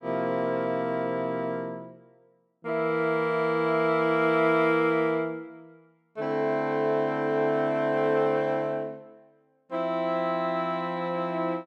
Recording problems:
none

